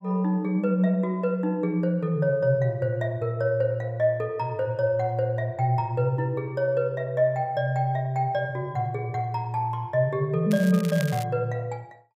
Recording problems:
crackle; at 11 s; loose cable, SNR 15 dB

